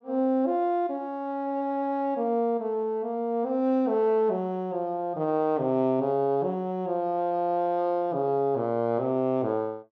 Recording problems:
none

